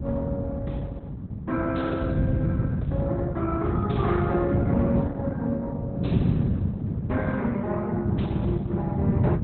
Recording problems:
lossy compression; Opus, log-spectral distance 2 dB, nothing above 4.1 kHz
wind on the microphone; below 200 Hz, SNR -2 dB

